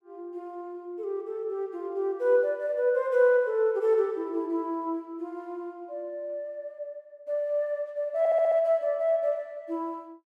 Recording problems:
audio stuttering; at 8 s

